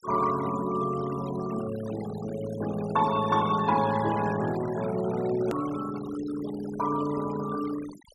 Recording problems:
denoising artefacts; signal-to-artefact ratio 15 dB
hard cut with a click; at 5.5 s

